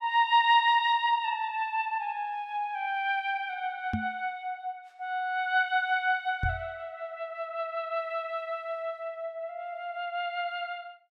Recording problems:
microphone thump; at 4 s and at 6.5 s; peak +2 dB vs average level

